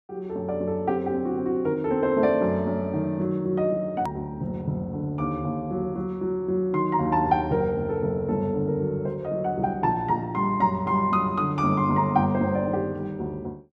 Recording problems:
hard cut with a click; at 4 s

